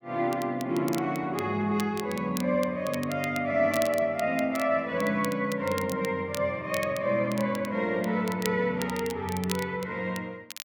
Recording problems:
crackling; vinyl, SNR 15 dB

